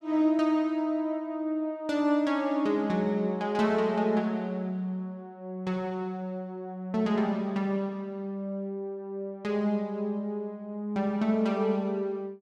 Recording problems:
none

